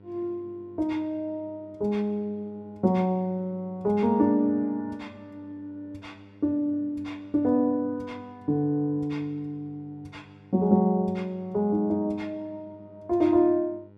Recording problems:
hum; 50 Hz, harmonics up to 1.4 kHz, SNR 25 dB

